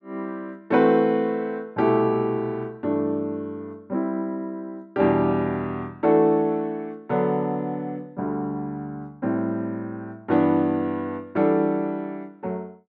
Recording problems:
none

